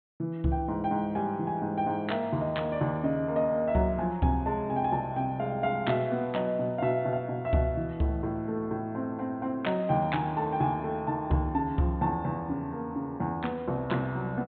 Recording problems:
treble cut off; nothing above 4 kHz

